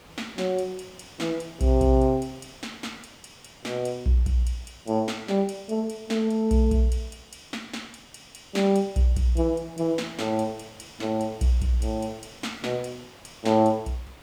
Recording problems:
hiss; slope -4 dB per octave, SNR 25 dB

